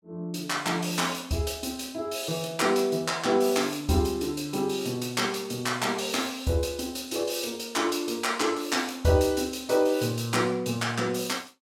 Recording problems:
none

